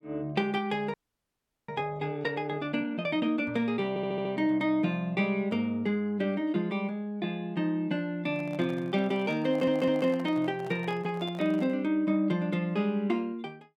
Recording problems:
audio freezing; at 1 s for 0.5 s
stutter; at 4 s and at 9.5 s
microphone handling noise; from 8.5 to 12 s; peak -11 dB vs average level

